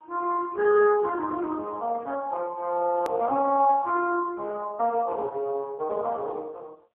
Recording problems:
telephone audio; 300 Hz to 2.5 kHz, AMR-NB
click at an edit; at 3 s

